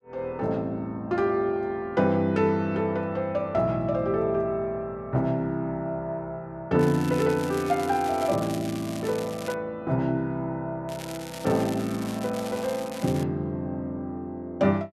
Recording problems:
crackle; from 7 to 9.5 s and from 11 to 13 s; loose cable, SNR 15 dB

